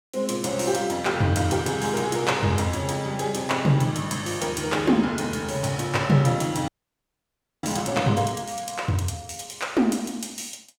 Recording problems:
frozen audio; at 6.5 s for 1 s

